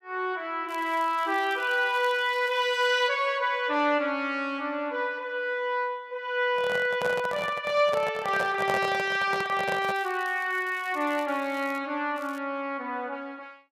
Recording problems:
crackling; from 0.5 to 3 s, from 10 to 12 s and at 12 s; loose cable, SNR 24 dB
microphone handling noise; from 6.5 to 10 s; peak 0 dB vs average level

